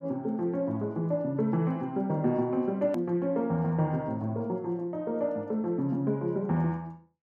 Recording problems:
hard cut with a click; at 3 s

